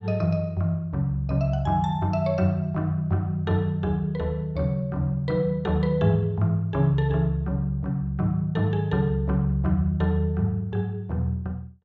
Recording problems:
none

